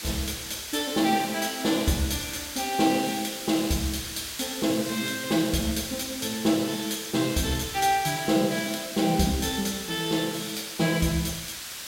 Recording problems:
background hiss; slope +2 dB per octave, SNR 8 dB

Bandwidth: 16 kHz